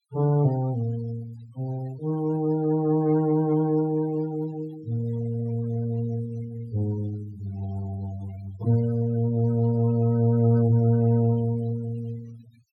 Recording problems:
noise reduction artefacts; signal-to-artefact ratio 21 dB

